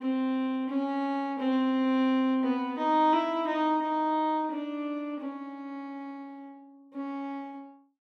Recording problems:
none

